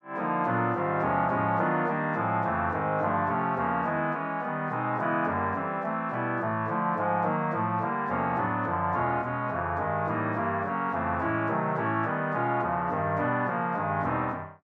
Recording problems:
none

